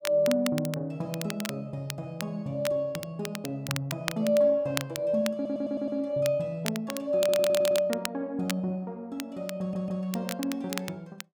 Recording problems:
crackling; vinyl, SNR 9 dB
audio stuttering; at 5.5 s, at 7 s and at 9.5 s

